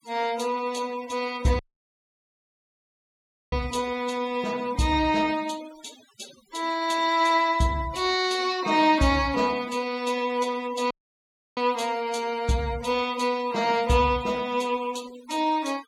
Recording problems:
denoising artefacts; signal-to-artefact ratio 18 dB
audio cutting out; at 1.5 s for 2 s and at 11 s for 0.5 s

